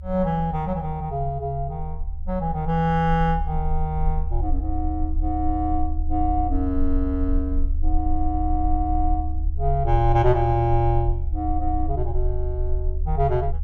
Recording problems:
rumble; below 72 Hz, strongest tone 24 Hz, SNR 3 dB

